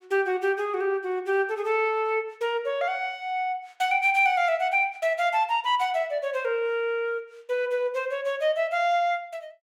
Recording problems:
none

